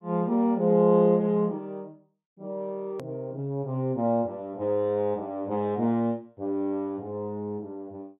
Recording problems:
treble cut off; nothing above 4 kHz
edit click; at 3 s

